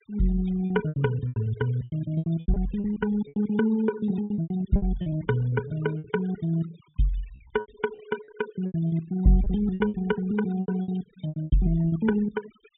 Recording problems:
treble cut off; nothing above 4 kHz
denoising artefacts; signal-to-artefact ratio 20 dB
lost packets; 16% of the sound replaced, filled with repeated pitch periods

